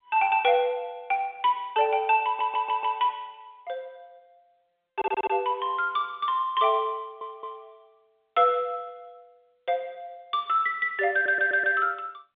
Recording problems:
telephone audio; 190 Hz to 3.7 kHz, G.711
audio stuttering; 4 times, first at 2.5 s

